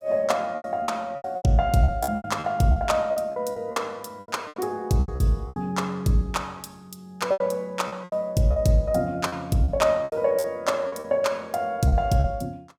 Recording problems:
packet loss; 13% of the sound replaced, filled with repeated pitch periods

